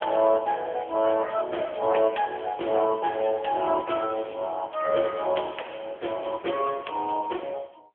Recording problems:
phone line; 320 Hz to 3.2 kHz, AMR-NB

